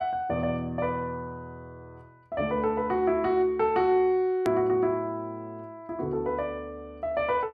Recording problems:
click at an edit; at 4.5 s

